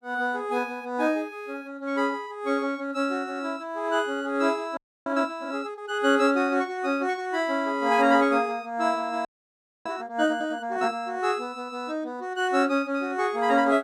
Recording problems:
frozen audio; at 5 s and at 9.5 s for 0.5 s

